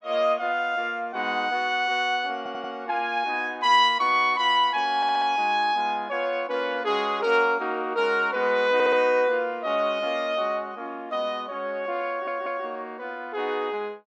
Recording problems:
audio stuttering; 4 times, first at 2.5 s

